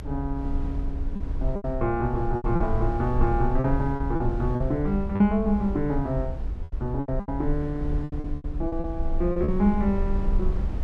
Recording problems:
low-frequency rumble; below 64 Hz, strongest tone 22 Hz, SNR 4 dB
lost packets; 9% of the sound replaced, filled with repeated pitch periods

